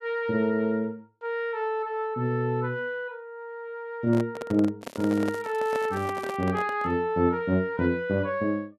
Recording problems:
handling noise; from 4 to 7 s; peak -3 dB vs average level
crackle; from 5 to 6.5 s; loose cable, SNR 24 dB

